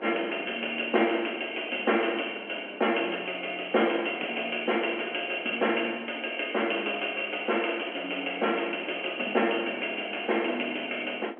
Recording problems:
phone line; 260 Hz to 3.2 kHz, G.711
wind on the microphone; below 820 Hz, SNR 18 dB

